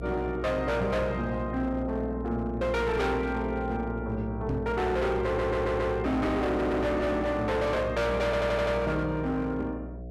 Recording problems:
distortion; hard clipping, signal-to-distortion ratio 7 dB
hum; 60 Hz, harmonics up to 720 Hz, SNR 9 dB
microphone bump; at 4.5 s; peak 0 dB vs average level
audio stuttering; at 5.5 s, at 6.5 s and at 8.5 s

